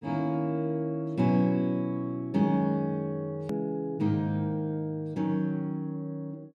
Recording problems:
click at an edit; at 3.5 s

